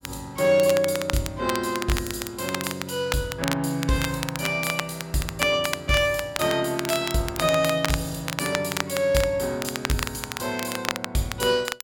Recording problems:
crackling; vinyl, SNR 7 dB

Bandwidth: 17.5 kHz